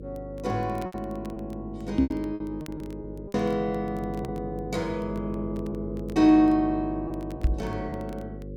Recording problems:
electrical hum; 50 Hz, harmonics up to 550 Hz, SNR 11 dB
crackle; vinyl, SNR 29 dB
lost packets; 6% of the sound replaced, filled with repeated pitch periods
microphone thump; at 2 s and at 7.5 s; peak +9 dB vs average level

